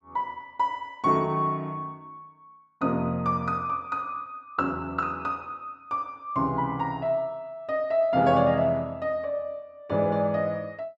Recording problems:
none

